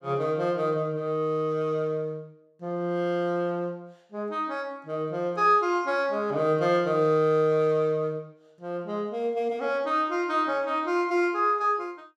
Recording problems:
none

